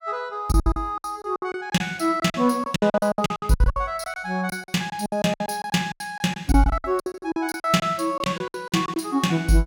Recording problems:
lost packets; 19% of the sound replaced, filled with silence

